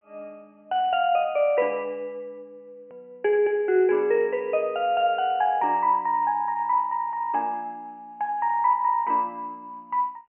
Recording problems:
telephone audio; 300 Hz to 3.3 kHz, G.726
hard cut with a click; at 3 s

